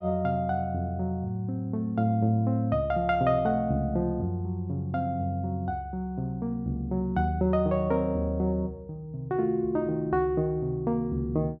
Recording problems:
none

